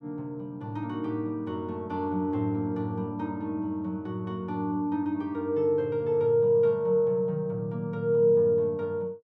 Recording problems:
none

